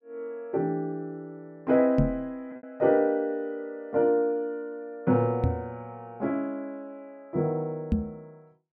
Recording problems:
packet loss; 1% of the sound replaced, filled with repeated pitch periods
microphone bump; at 2 s, at 5.5 s and at 8 s; peak +7 dB vs average level

